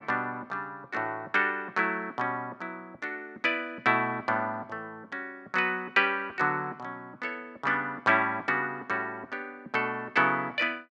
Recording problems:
none

